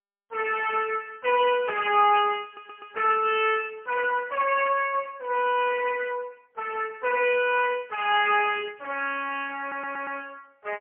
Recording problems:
telephone audio; 300 Hz to 3 kHz, AMR-NB, then MP3
stutter; at 2.5 s and at 9.5 s

